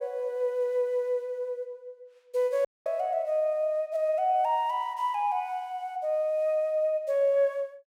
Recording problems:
dropout; at 2.5 s

